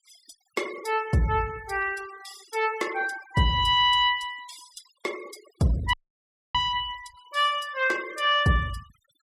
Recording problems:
denoising artefacts; signal-to-artefact ratio 20 dB
dropout; at 6 s for 0.5 s

